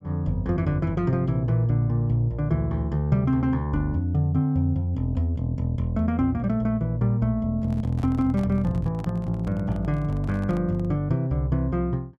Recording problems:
microphone handling noise; from 7.5 to 11 s; peak -10 dB vs average level

